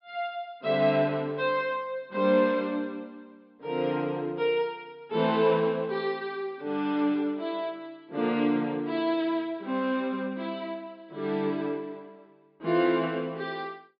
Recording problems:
treble cut off; nothing above 5.5 kHz

